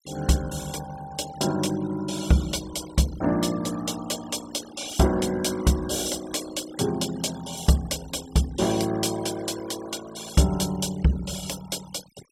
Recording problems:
noise reduction artefacts; signal-to-artefact ratio 16 dB

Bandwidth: 16 kHz